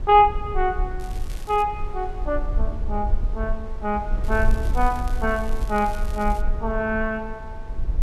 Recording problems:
rumble; below 48 Hz, strongest tone 22 Hz, SNR 5 dB
wind on the microphone; below 970 Hz, SNR 21 dB
crackle; at 1 s and from 4 to 6.5 s; loose cable, SNR 21 dB

